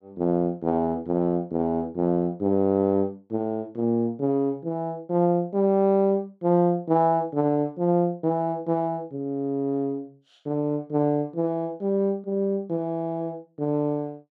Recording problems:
none

